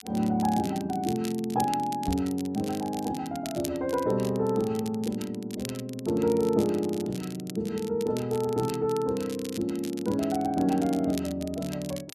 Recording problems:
crackling; vinyl, SNR 15 dB
knock on the microphone; at 2 s; peak -2 dB vs average level

